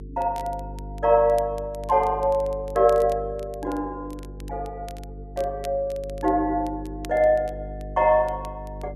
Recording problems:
electrical hum; 50 Hz, harmonics up to 450 Hz, SNR 15 dB
crackle; vinyl, SNR 27 dB

